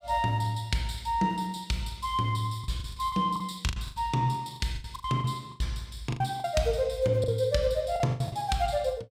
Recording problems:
lost packets; 11% of the sound replaced, filled with the last packet

